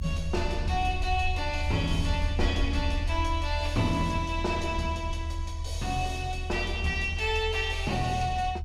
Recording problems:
rumble; below 80 Hz, SNR 4 dB

